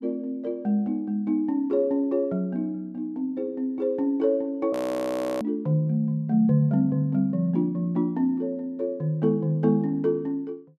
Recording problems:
frozen audio; at 4.5 s for 0.5 s

